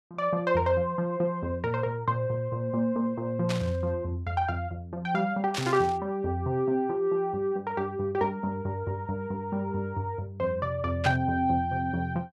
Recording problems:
static burst; at 3.5 s, at 5.5 s and at 11 s; peak +1 dB vs average level

